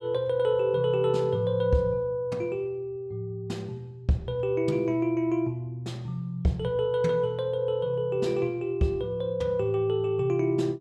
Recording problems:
none

